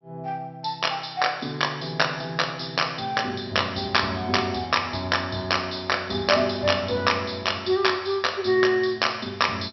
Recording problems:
treble cut off; nothing above 5.7 kHz

